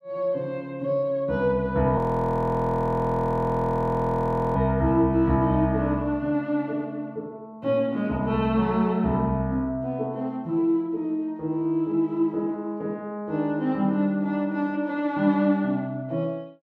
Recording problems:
frozen audio; at 2 s for 2.5 s

